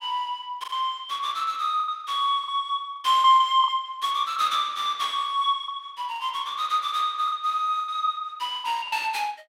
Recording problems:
lost packets; 9% of the sound replaced, filled with the last packet

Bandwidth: 16 kHz